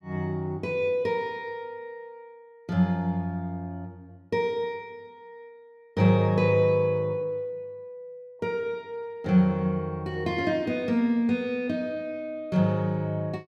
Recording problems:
none

